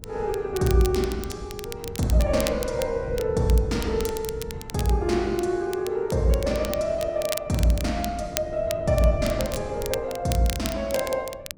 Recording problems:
wind on the microphone; below 180 Hz, SNR 14 dB
crackling; vinyl, SNR 12 dB

